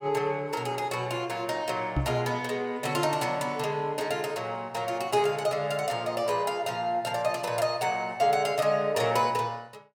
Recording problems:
microphone thump; at 2 s; peak +4 dB vs average level

